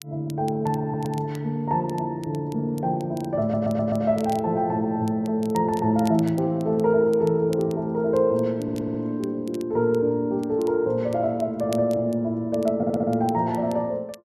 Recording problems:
crackling; vinyl, SNR 25 dB
stutter; 4 times, first at 1 s

